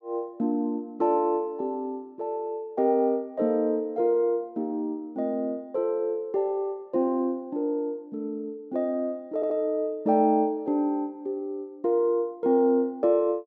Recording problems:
audio stuttering; at 9.5 s

